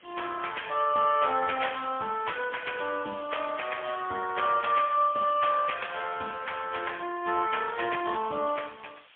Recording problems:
telephone audio; 190 Hz to 3.4 kHz, AMR-NB, then MP3
background hiss; SNR 26 dB

